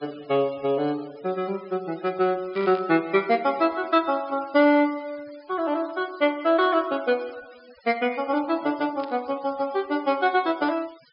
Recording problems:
treble cut off; nothing above 5.5 kHz
noise reduction artefacts; signal-to-artefact ratio 24 dB
static burst; at 2.5 s and at 9 s; peak -14 dB vs average level

